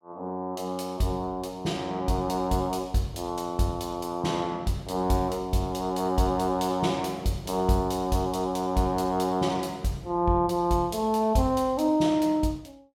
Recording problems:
none

